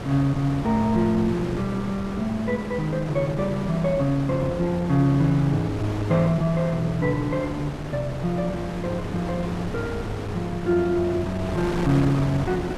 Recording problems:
wind noise; below 800 Hz, SNR 8 dB

